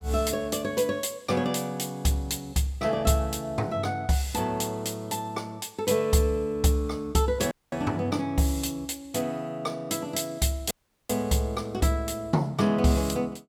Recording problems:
audio cutting out; at 7.5 s and at 11 s

